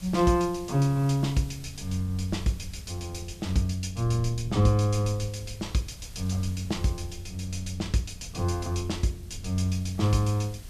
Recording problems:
background hiss; slope 0 dB per octave, SNR 23 dB
wind noise; below 96 Hz, SNR 15 dB

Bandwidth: 14 kHz